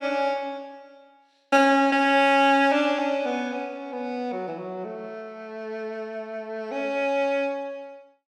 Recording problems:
none

